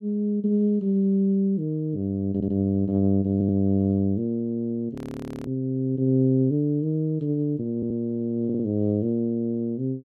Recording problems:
stutter; 4 times, first at 2.5 s
audio freezing; at 5 s for 0.5 s

